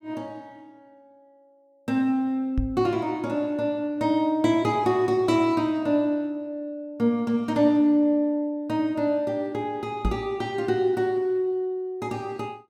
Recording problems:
knock on the microphone; at 2.5 s and at 10 s; peak +2 dB vs average level

